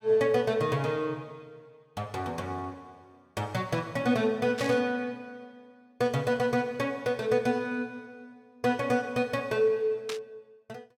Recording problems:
static burst; at 4.5 s and at 10 s; peak -3 dB vs average level

